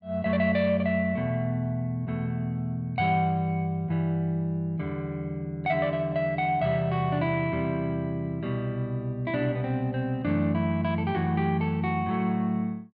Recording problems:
none

